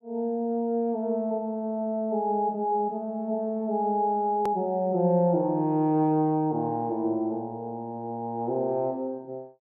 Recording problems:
edit click; at 4.5 s

